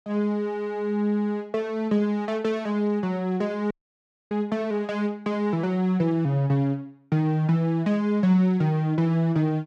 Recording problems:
dropout; at 3.5 s for 0.5 s

